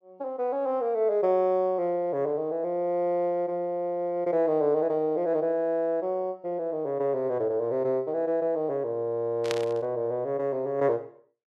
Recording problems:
burst of static; at 9.5 s; peak -1 dB vs average level

